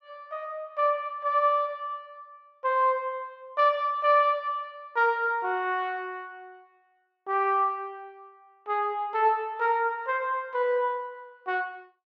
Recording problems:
none

